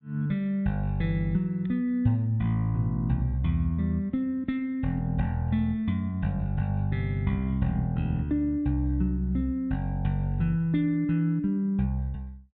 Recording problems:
treble missing; nothing above 4 kHz

